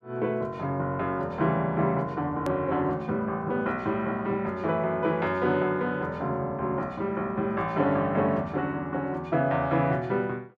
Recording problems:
hard cut with a click; at 2.5 s

